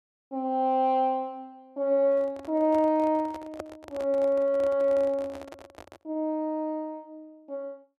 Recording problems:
microphone handling noise; from 2 to 6 s; peak -6 dB vs average level

